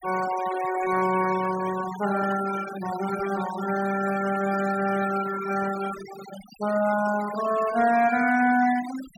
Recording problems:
denoising artefacts; signal-to-artefact ratio 13 dB

